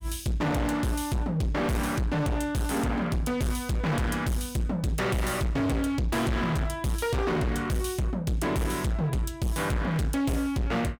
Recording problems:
distortion; hard clipping, signal-to-distortion ratio 6 dB

